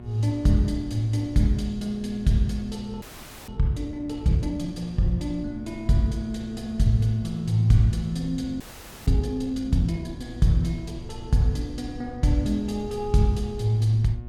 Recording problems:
mains hum; 60 Hz, harmonics up to 1.1 kHz, SNR 17 dB
low-frequency rumble; below 96 Hz, SNR 18 dB
frozen audio; at 3 s and at 8.5 s

